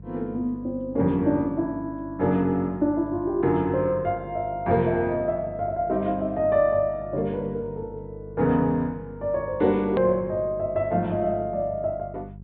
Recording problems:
treble cut off; nothing above 4.3 kHz
hum; 50 Hz, harmonics up to 400 Hz, SNR 17 dB
edit click; at 10 s

